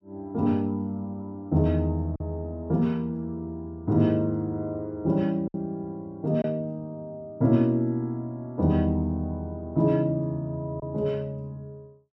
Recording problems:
lost packets; 1.2% of the sound replaced, filled with silence

